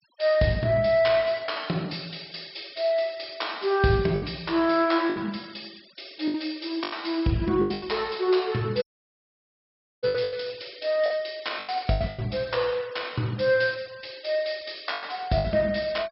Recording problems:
treble cut off; nothing above 5.4 kHz
noise reduction artefacts; signal-to-artefact ratio 24 dB
lost packets; 7% of the sound replaced, filled with the last packet
dropout; at 9 s for 1 s

